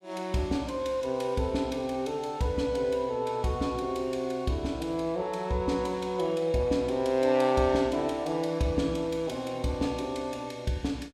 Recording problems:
none

